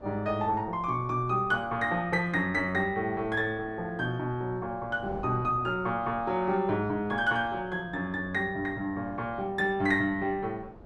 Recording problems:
wind noise; below 550 Hz, SNR 19 dB

